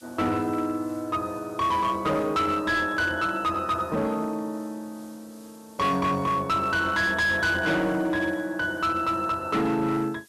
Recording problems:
distorted audio; hard clipping, signal-to-distortion ratio 11 dB
background hiss; slope +4 dB per octave, SNR 28 dB

